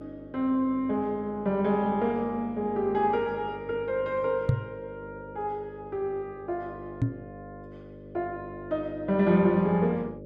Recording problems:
hum; 50 Hz, harmonics up to 600 Hz, SNR 16 dB
microphone bump; at 4.5 s and at 7 s; peak +8 dB vs average level

